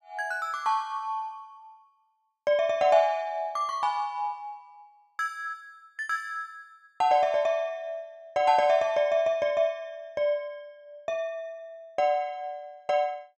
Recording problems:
none

